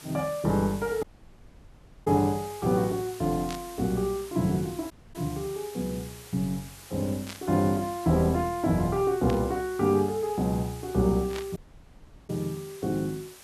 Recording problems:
background hiss; slope -1 dB per octave, SNR 17 dB
dropout; at 1 s for 1 s, at 5 s and at 12 s for 0.5 s
burst of static; 4 times, first at 3.5 s; peak -7 dB vs average level

